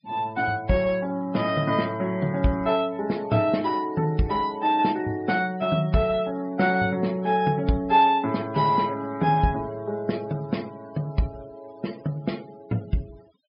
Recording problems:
treble missing; nothing above 5.5 kHz
denoising artefacts; signal-to-artefact ratio 24 dB

